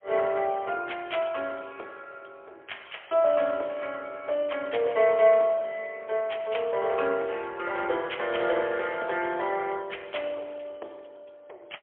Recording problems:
telephone audio; 320 Hz to 3.4 kHz, AMR-NB, then MP3

